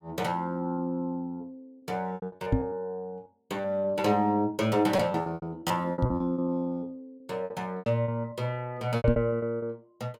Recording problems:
lost packets; 14% of the sound replaced, filled with repeated pitch periods
microphone bump; at 2.5 s, at 6 s and at 9 s; peak +8 dB vs average level

